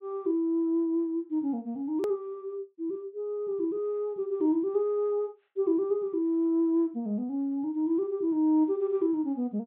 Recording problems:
low-pass filter; nothing above 4 kHz
click at an edit; at 2 s

